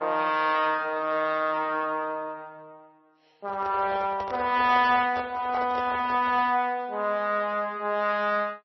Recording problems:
codec artefacts; AAC, then MP3, log-spectral distance 2 dB, nothing above 5.7 kHz
handling noise; from 3.5 to 6.5 s; peak -8 dB vs average level

